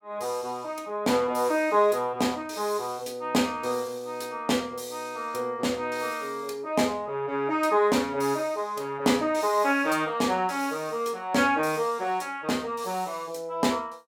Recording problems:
none

